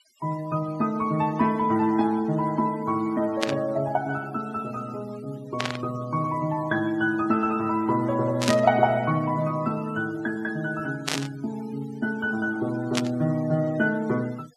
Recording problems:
denoising artefacts; signal-to-artefact ratio 22 dB
static burst; 5 times, first at 3.5 s; peak +4 dB vs average level

